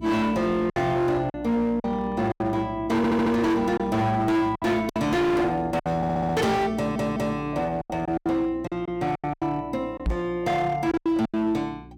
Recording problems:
distortion; hard clipping, signal-to-distortion ratio 8 dB
electrical hum; 60 Hz, harmonics up to 360 Hz, SNR 18 dB
packet loss; 9% of the sound replaced, filled with silence
audio stuttering; at 3 s, at 6 s and at 7 s
microphone bump; at 10 s; peak +2 dB vs average level

